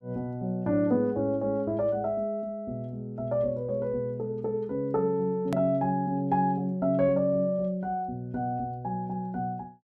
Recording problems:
click at an edit; at 5.5 s

